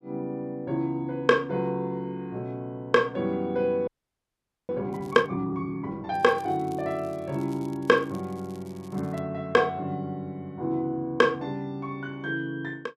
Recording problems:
audio freezing; at 4 s for 1 s
crackling; at 5 s and from 6 to 9 s; loose cable, SNR 28 dB

